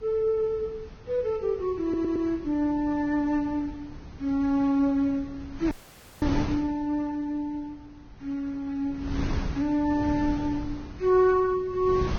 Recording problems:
codec artefacts; Vorbis, log-spectral distance 2 dB, nothing above 16.5 kHz
wind noise; below 250 Hz, SNR 12 dB
stutter; at 2 s
dropout; at 5.5 s for 0.5 s

